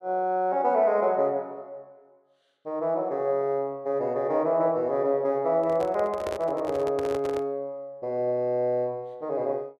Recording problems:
handling noise; from 5.5 to 7.5 s; peak -3 dB vs average level

